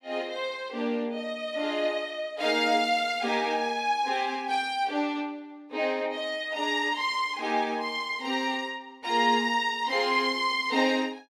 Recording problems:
none

